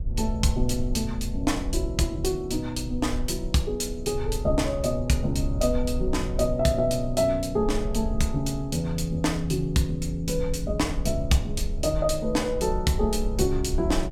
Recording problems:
low-frequency rumble; below 62 Hz, SNR 8 dB

